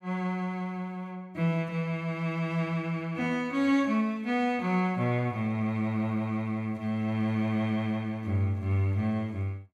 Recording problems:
none

